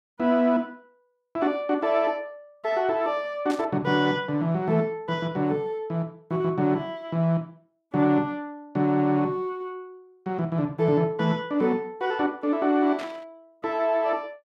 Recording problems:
burst of static; at 3.5 s and at 13 s; peak -9 dB vs average level

